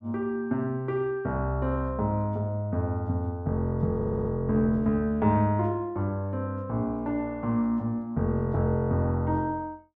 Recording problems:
audio stuttering; at 4 s

